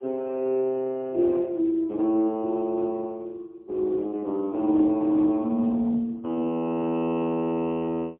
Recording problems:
telephone audio; 170 Hz to 3.6 kHz, AMR-NB, then MP3

